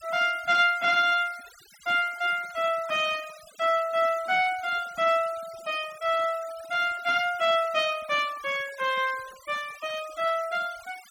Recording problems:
denoising artefacts; signal-to-artefact ratio 20 dB

